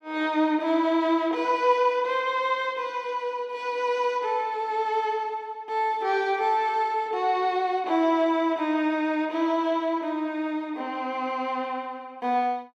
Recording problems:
none

